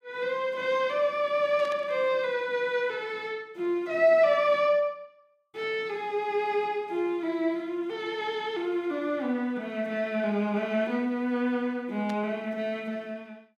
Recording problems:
static burst; at 1.5 s and at 12 s; peak -11 dB vs average level

